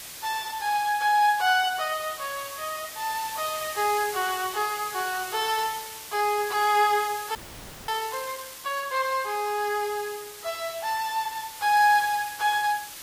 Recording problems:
codec artefacts; Vorbis, log-spectral distance 9 dB, nothing above 15.1 kHz
hiss; slope +1 dB per octave, SNR 12 dB
frozen audio; at 7.5 s for 0.5 s

